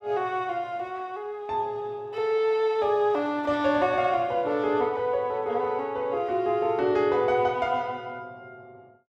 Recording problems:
none

